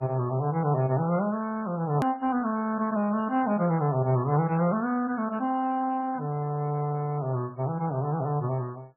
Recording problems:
lossy compression; MP2, then MP3, log-spectral distance 2 dB, nothing above 13.1 kHz
hard cut with a click; at 2 s

